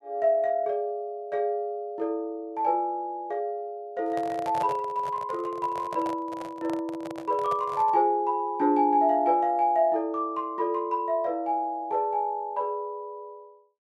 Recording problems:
microphone handling noise; from 4 to 8 s; peak -3 dB vs average level

